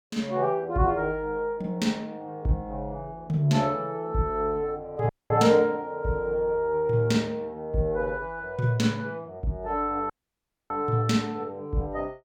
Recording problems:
audio cutting out; at 5 s and at 10 s for 0.5 s

